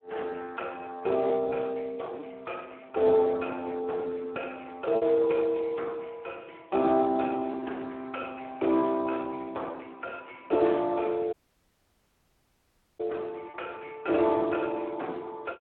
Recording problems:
phone line; 280 Hz to 3.6 kHz, Speex
lost packets; 1.7% of the sound replaced, filled with repeated pitch periods
audio cutting out; at 11 s for 1.5 s

